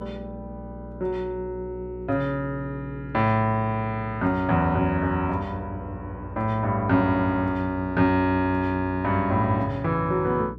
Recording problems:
electrical hum; 60 Hz, harmonics up to 480 Hz, SNR 15 dB

